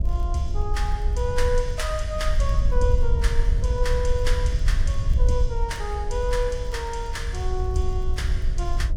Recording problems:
electrical hum; 60 Hz, harmonics up to 660 Hz, SNR 18 dB
wind on the microphone; below 62 Hz, SNR -3 dB
crackling; vinyl, SNR 30 dB

